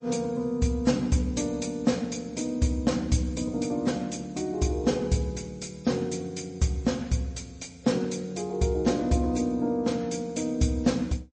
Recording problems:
lossy compression; MP3, log-spectral distance 3 dB, nothing above 8.2 kHz

